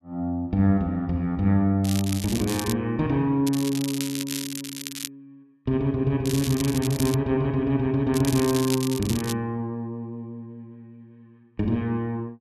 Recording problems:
crackle; 4 times, first at 2 s; loose cable, SNR 9 dB

